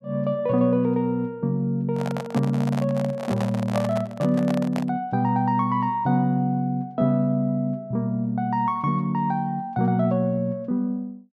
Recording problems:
microphone handling noise; from 2 to 5 s; peak 0 dB vs average level

